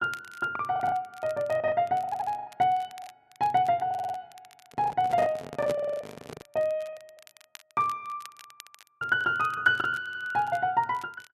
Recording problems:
crackle; vinyl, SNR 25 dB
lost packets; 13% of the sound replaced, filled with the last packet
audio stuttering; 4 times, first at 2 s
microphone handling noise; from 4.5 to 6.5 s; peak -2 dB vs average level

